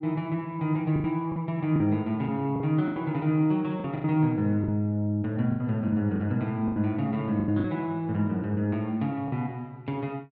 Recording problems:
packet loss; 9% of the sound replaced, filled with the last packet

